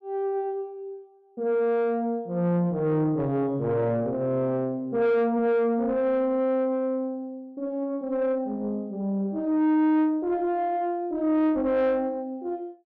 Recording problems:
distorted audio; soft clipping, signal-to-distortion ratio 11 dB

